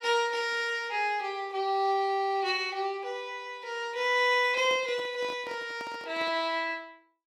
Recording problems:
microphone handling noise; from 4.5 to 6.5 s; peak -12 dB vs average level

